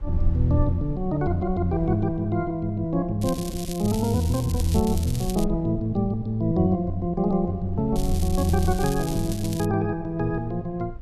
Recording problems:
rumble; below 52 Hz, strongest tone 20 Hz, SNR 12 dB
crackle; from 3 to 5.5 s and from 8 to 9.5 s; loose cable, SNR 13 dB

